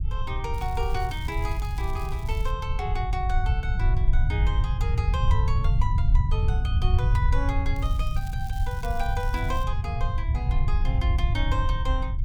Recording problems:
rumble; below 88 Hz, SNR -7 dB
crackling; from 0.5 to 2.5 s and from 8 to 9.5 s; loose cable, SNR 16 dB

